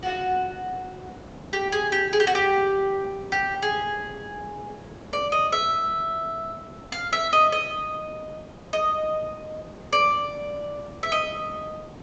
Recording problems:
low-pass filter; nothing above 8 kHz
hiss; slope -8 dB per octave, SNR 19 dB

